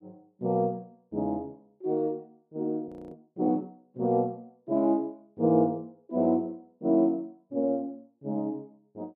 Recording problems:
frozen audio; at 3 s

